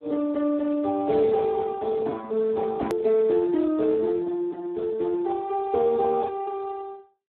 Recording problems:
phone line; 220 Hz to 2 kHz, Speex
click at an edit; at 3 s

